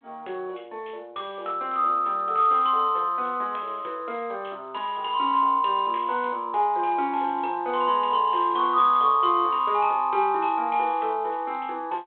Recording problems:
telephone audio; 300 Hz to 3.6 kHz, G.726

